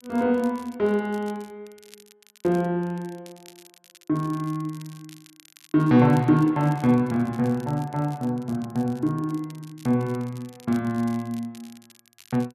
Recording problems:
crackling; vinyl, SNR 26 dB

